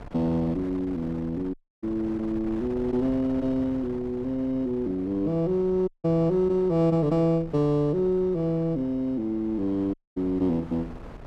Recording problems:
wind noise; below 520 Hz, SNR 17 dB
audio cutting out; at 1.5 s, at 6 s and at 10 s

